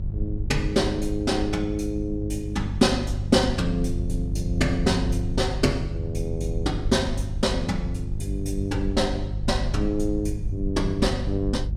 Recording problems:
hum; 50 Hz, harmonics up to 350 Hz, SNR 6 dB
low-frequency rumble; below 78 Hz, SNR 8 dB

